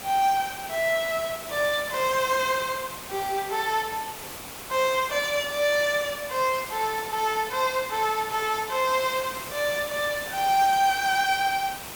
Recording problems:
hiss; slope -3 dB per octave, SNR 11 dB

